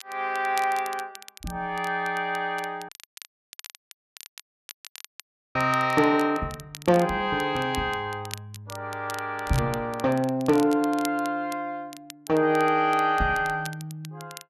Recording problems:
crackling; vinyl, SNR 18 dB
audio cutting out; at 3 s for 2.5 s

